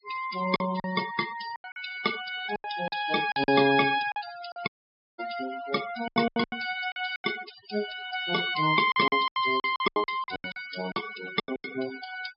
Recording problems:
low-pass filter; nothing above 5.5 kHz
noise reduction artefacts; signal-to-artefact ratio 12 dB
lost packets; 13% of the sound replaced, filled with silence
dropout; at 4.5 s for 0.5 s

